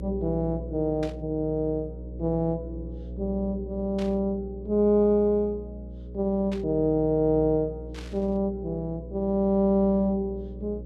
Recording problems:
hum; 60 Hz, harmonics up to 540 Hz, SNR 13 dB
burst of static; 4 times, first at 1 s; peak -12 dB vs average level

